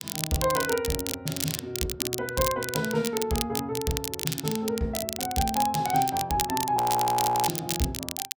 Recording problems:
crackling; vinyl, SNR 4 dB
audio freezing; at 7 s for 0.5 s

